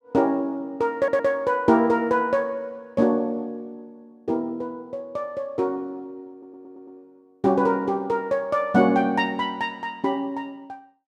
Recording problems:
audio stuttering; at 1 s and at 6.5 s

